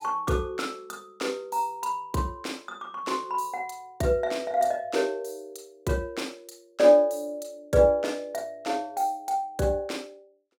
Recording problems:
none

